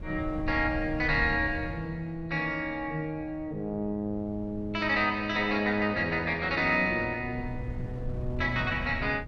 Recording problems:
wind noise; below 140 Hz, SNR 12 dB

